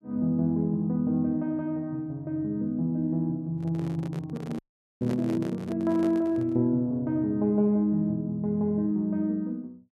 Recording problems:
handling noise; from 3.5 to 6.5 s; peak -5 dB vs average level
audio cutting out; at 4.5 s

